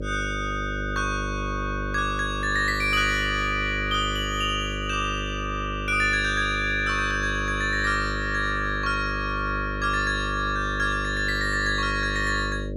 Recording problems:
hum; 50 Hz, harmonics up to 600 Hz, SNR 7 dB

